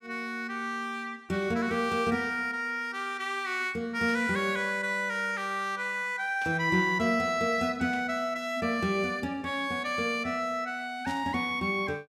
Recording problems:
static burst; 4 times, first at 4 s; peak -12 dB vs average level

